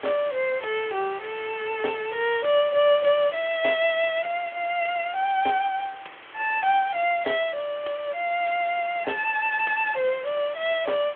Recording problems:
phone line; 280 Hz to 3.4 kHz, Speex
hiss; SNR 19 dB

